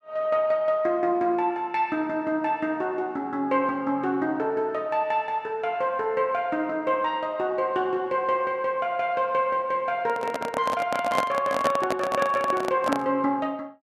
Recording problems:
microphone handling noise; from 10 to 13 s; peak +4 dB vs average level

